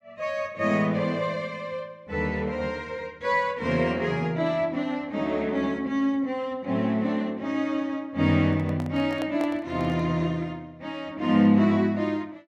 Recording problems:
handling noise; from 8.5 to 10 s; peak -6 dB vs average level

